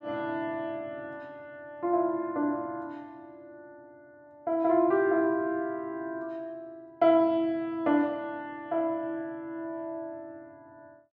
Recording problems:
none

